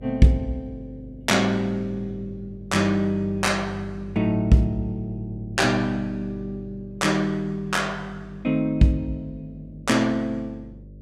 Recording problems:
hum; 50 Hz, harmonics up to 600 Hz, SNR 18 dB

